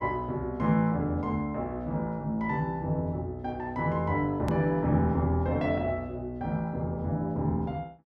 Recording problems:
hard cut with a click; at 4.5 s

